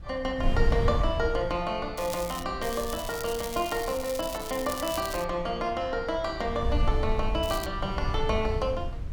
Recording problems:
wind noise; below 78 Hz, SNR 4 dB
crackle; at 2 s, from 2.5 to 5 s and at 7.5 s; loose cable, SNR 10 dB

